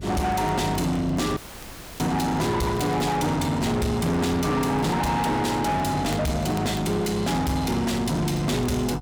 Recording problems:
distorted audio; soft clipping, signal-to-distortion ratio 6 dB
electrical hum; 50 Hz, harmonics up to 350 Hz, SNR 16 dB
crackling; vinyl, SNR 27 dB
audio cutting out; at 1.5 s for 0.5 s

